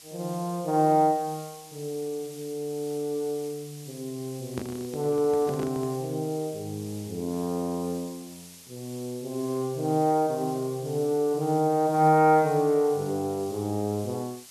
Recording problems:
background hiss; SNR 19 dB
microphone handling noise; from 4.5 to 6 s; peak -4 dB vs average level

